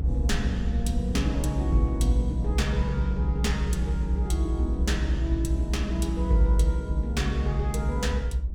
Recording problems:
low-frequency rumble; below 66 Hz, strongest tone 64 Hz, SNR -1 dB

